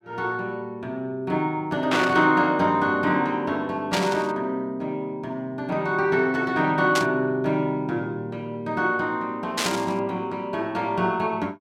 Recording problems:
static burst; 4 times, first at 2 s; peak +3 dB vs average level

